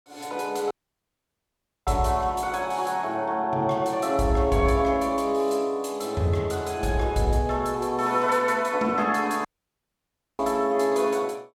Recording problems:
dropout; at 0.5 s for 1 s and at 9.5 s for 1 s

